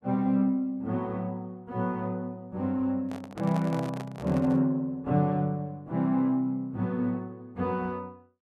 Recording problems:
handling noise; from 3 to 4.5 s; peak -6 dB vs average level

